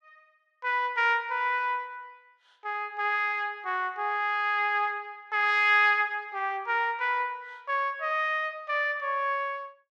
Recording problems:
none

